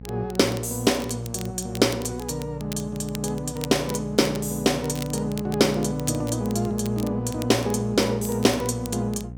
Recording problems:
mains hum; 60 Hz, harmonics up to 540 Hz, SNR 14 dB
crackling; vinyl, SNR 17 dB

